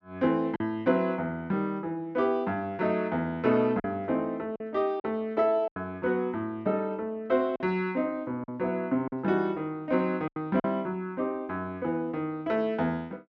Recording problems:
lost packets; 4% of the sound replaced, filled with silence

